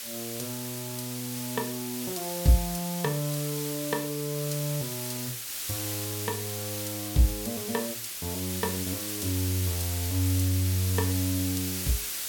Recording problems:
background hiss; SNR 2 dB

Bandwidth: 17 kHz